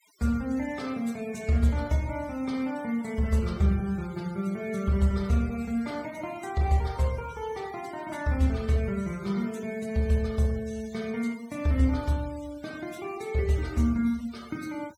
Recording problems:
noise reduction artefacts; signal-to-artefact ratio 22 dB

